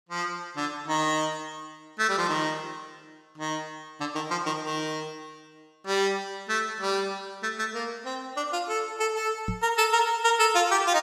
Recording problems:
knock on the microphone; at 9.5 s; peak 0 dB vs average level

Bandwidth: 16 kHz